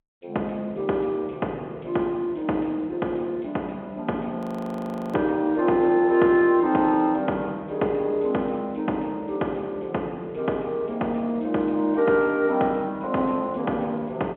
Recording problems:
telephone audio; 220 Hz to 3.8 kHz, G.711
audio freezing; at 4.5 s for 1 s

